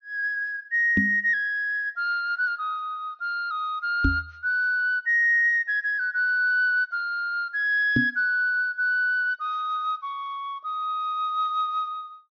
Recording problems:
low-pass filter; nothing above 6.4 kHz
microphone bump; at 1 s, at 4 s and at 8 s; peak +4 dB vs average level

